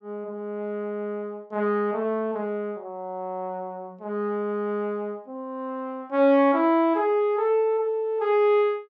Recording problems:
none

